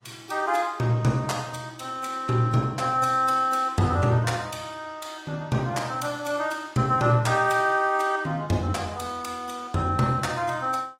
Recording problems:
lossy compression; AAC, log-spectral distance 3 dB, nothing above 15.5 kHz

